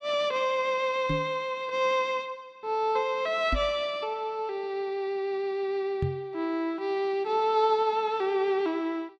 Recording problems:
microphone thump; at 1 s, at 3.5 s and at 6 s; peak +2 dB vs average level

